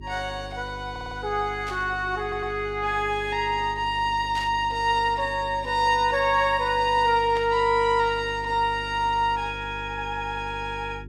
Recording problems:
hum; 50 Hz, harmonics up to 400 Hz, SNR 16 dB
stutter; at 1 s and at 2 s
static burst; at 1.5 s, at 4.5 s and at 7.5 s; peak -11 dB vs average level

